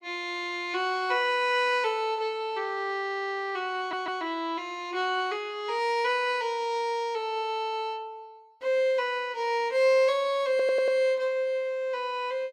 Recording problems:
audio stuttering; at 3 s, at 4 s and at 11 s

